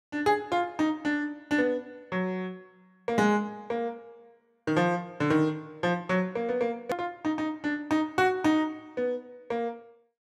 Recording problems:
hard cut with a click; at 7 s

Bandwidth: 14.5 kHz